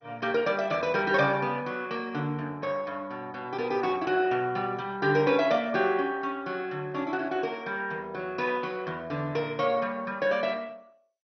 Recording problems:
lossy codec; MP2, log-spectral distance 3 dB, nothing above 6 kHz

